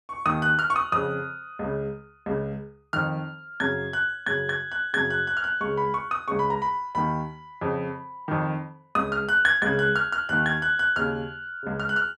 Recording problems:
none

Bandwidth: 12.5 kHz